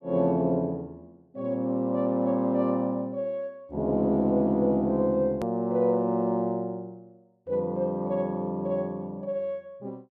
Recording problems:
edit click; at 5.5 s

